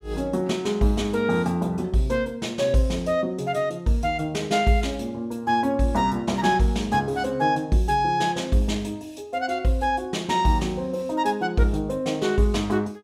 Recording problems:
none

